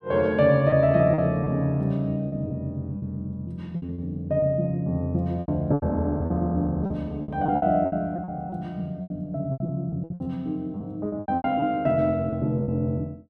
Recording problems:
packet loss; 11% of the sound replaced, filled with repeated pitch periods

